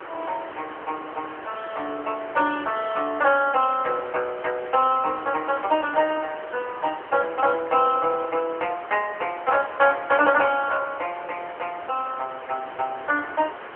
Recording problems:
phone line; 300 Hz to 3.1 kHz, AMR-NB
background hiss; SNR 14 dB

